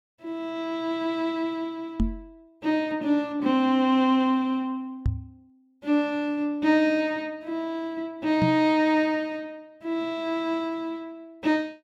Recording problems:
microphone thump; at 2 s, at 5 s and at 8.5 s; peak +4 dB vs average level

